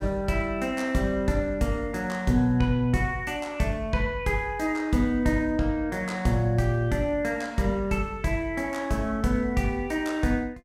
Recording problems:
none

